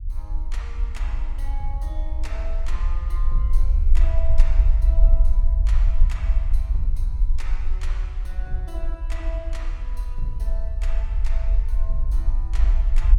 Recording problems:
low-frequency rumble; below 48 Hz, strongest tone 22 Hz, SNR -15 dB

